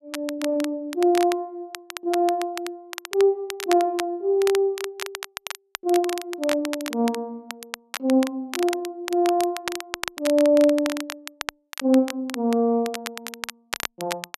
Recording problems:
crackling; vinyl, SNR 11 dB

